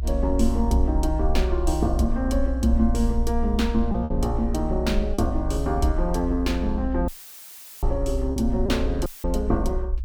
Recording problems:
rumble; below 62 Hz, SNR 3 dB
packet loss; 2% of the sound replaced, filled with repeated pitch periods
audio cutting out; at 7 s for 1 s and at 9 s; filled with static

